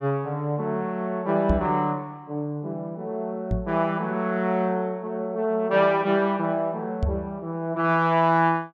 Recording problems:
microphone bump; at 1.5 s, at 3.5 s and at 7 s; peak +4 dB vs average level

